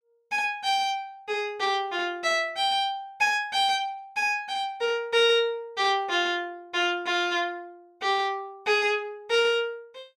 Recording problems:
none

